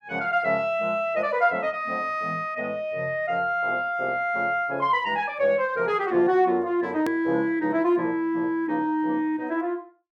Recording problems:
edit click; at 7 s

